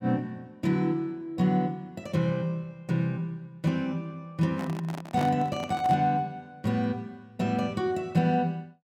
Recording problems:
handling noise; from 4.5 to 6 s; peak -2 dB vs average level

